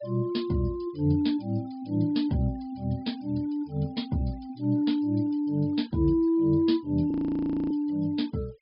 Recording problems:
low-pass filter; nothing above 5.5 kHz
denoising artefacts; signal-to-artefact ratio 28 dB
audio freezing; at 7 s for 0.5 s

